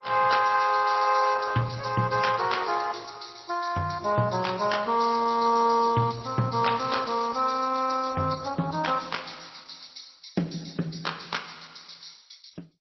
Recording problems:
lossy compression; MP3, then Opus, log-spectral distance 8 dB, nothing above 5.7 kHz

